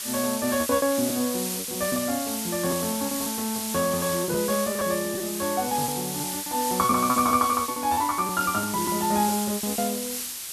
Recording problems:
background hiss; slope +3 dB per octave, SNR 4 dB
packet loss; 12% of the sound replaced, filled with repeated pitch periods

